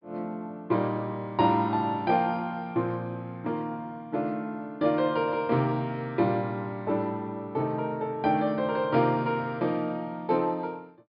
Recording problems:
low-pass filter; nothing above 5.5 kHz

